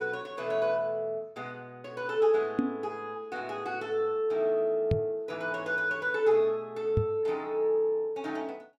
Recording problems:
knock on the microphone; at 2.5 s, at 5 s and at 7 s; peak +6 dB vs average level

